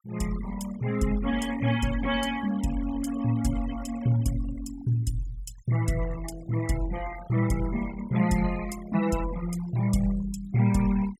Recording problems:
denoising artefacts; signal-to-artefact ratio 15 dB

